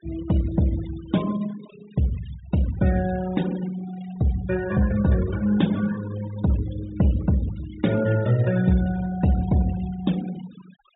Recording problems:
treble missing; nothing above 4 kHz
noise reduction artefacts; signal-to-artefact ratio 17 dB

